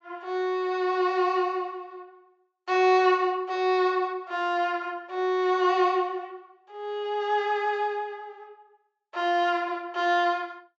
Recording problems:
treble missing; nothing above 7.5 kHz

